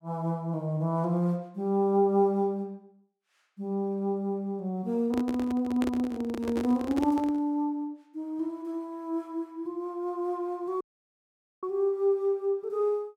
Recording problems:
handling noise; from 5 to 7.5 s; peak +1 dB vs average level
dropout; at 11 s for 1 s

